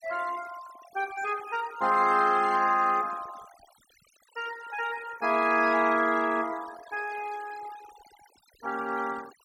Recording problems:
denoising artefacts; signal-to-artefact ratio 19 dB

